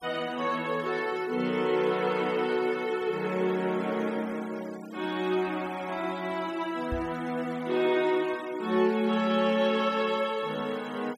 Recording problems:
noise reduction artefacts; signal-to-artefact ratio 20 dB
microphone thump; at 7 s; peak -3 dB vs average level

